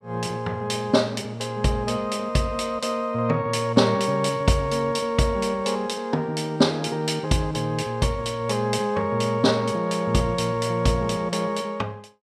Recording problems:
none

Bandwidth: 14.5 kHz